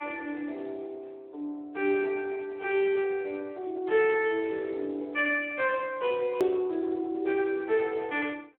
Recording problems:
telephone audio; 260 Hz to 3.4 kHz, Speex
hard cut with a click; at 6.5 s

